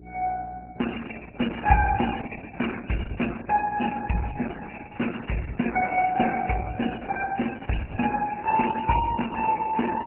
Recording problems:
lossy codec; MP3, then Opus, log-spectral distance 8 dB, nothing above 2.8 kHz
hum; 60 Hz, harmonics up to 420 Hz, SNR 21 dB

